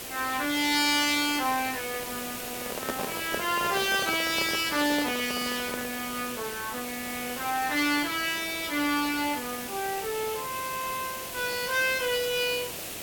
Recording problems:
background hiss; SNR 7 dB
microphone handling noise; from 2.5 to 6 s; peak 0 dB vs average level

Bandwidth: 17.5 kHz